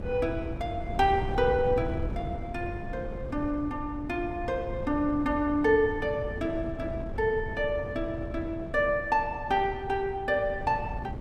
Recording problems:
wind noise; below 200 Hz, SNR 9 dB

